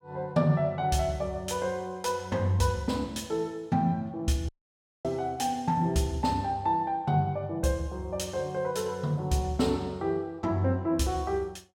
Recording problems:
dropout; at 4.5 s for 0.5 s

